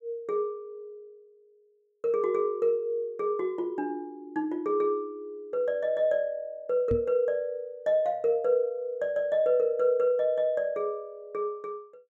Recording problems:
microphone bump; at 7 s; peak 0 dB vs average level

